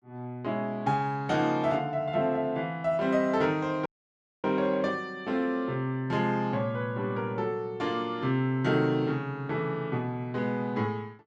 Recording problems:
dropout; at 4 s for 0.5 s

